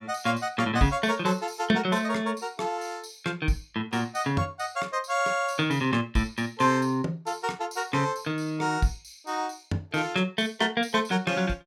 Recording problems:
none

